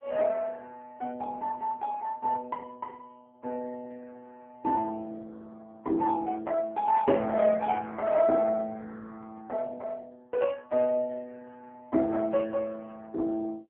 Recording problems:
telephone audio; 240 Hz to 3.4 kHz, AMR-NB

